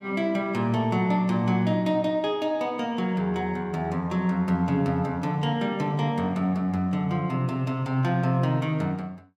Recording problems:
none

